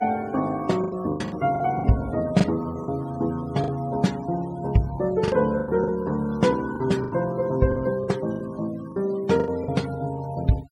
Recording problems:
denoising artefacts; signal-to-artefact ratio 21 dB
packet loss; 9% of the sound replaced, filled with the last packet

